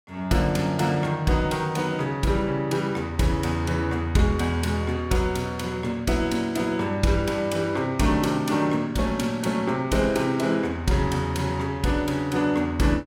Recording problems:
none

